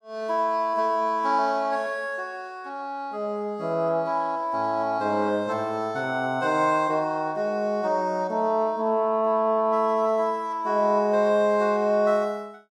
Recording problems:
none

